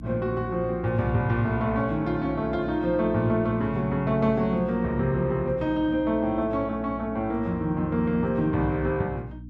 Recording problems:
hum; 60 Hz, harmonics up to 300 Hz, SNR 15 dB

